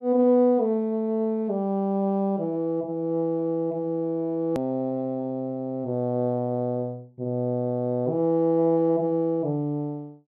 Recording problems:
click at an edit; at 4.5 s

